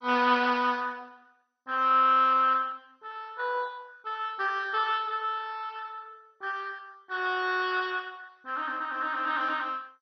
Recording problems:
lossy codec; MP2, log-spectral distance 4 dB, nothing above 5.2 kHz

